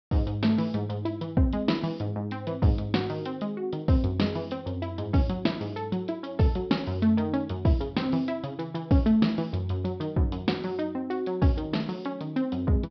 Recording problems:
treble cut off; nothing above 5.5 kHz

